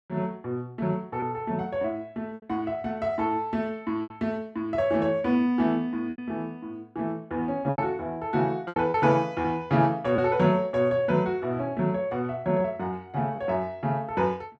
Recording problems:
lost packets; 4% of the sound replaced, filled with repeated pitch periods

